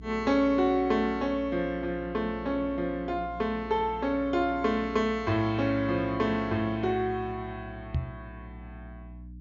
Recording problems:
low-pass filter; nothing above 6.9 kHz
electrical hum; 60 Hz, harmonics up to 300 Hz, SNR 17 dB
microphone thump; at 8 s; peak +2 dB vs average level

